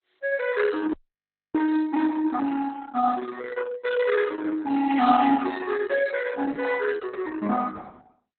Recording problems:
codec artefacts; Opus, log-spectral distance 4 dB, nothing above 4 kHz
frozen audio; at 1 s for 0.5 s

